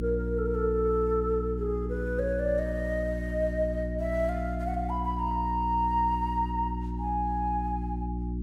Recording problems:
hum; 60 Hz, harmonics up to 360 Hz, SNR 4 dB

